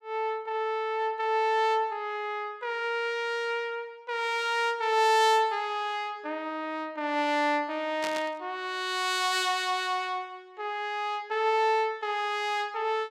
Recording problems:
burst of static; at 8 s; peak -4 dB vs average level

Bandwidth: 16 kHz